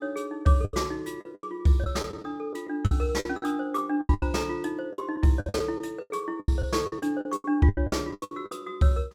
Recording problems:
packet loss; 17% of the sound replaced, filled with the last packet

